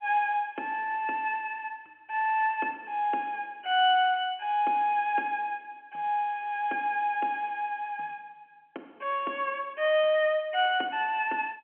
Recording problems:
telephone audio; 240 Hz to 3.3 kHz, G.711

